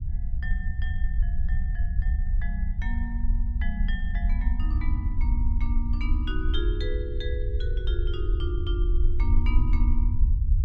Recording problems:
rumble; below 62 Hz, SNR -10 dB

